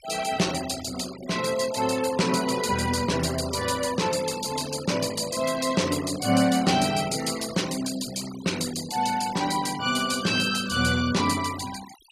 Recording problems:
noise reduction artefacts; signal-to-artefact ratio 13 dB

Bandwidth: 14.5 kHz